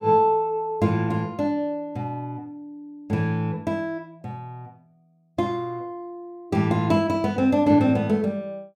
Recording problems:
none

